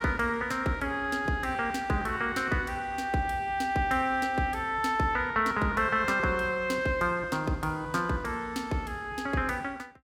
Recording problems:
none

